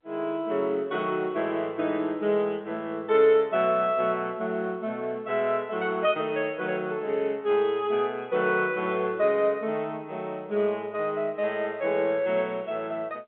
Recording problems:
phone line; 130 Hz to 3.5 kHz, G.711

